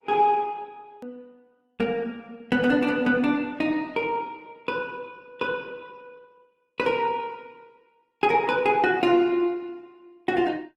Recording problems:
lossy compression; Opus, log-spectral distance 2 dB, nothing above 16.6 kHz
click at an edit; at 1 s

